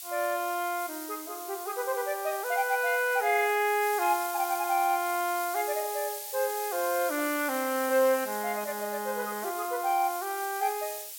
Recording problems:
background hiss; SNR 9 dB

